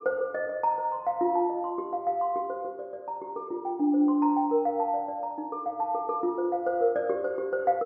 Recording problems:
none

